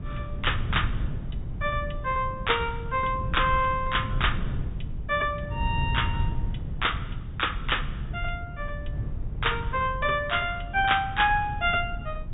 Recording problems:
low-pass filter; nothing above 4 kHz
rumble; below 120 Hz, SNR 6 dB

